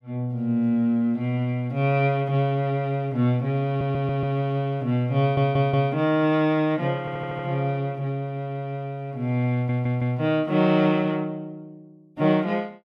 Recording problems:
stutter; 4 times, first at 3.5 s

